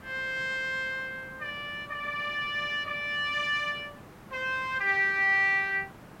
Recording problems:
hiss; SNR 21 dB

